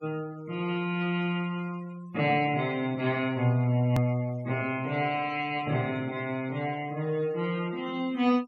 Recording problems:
noise reduction artefacts; signal-to-artefact ratio 22 dB
hard cut with a click; at 4 s

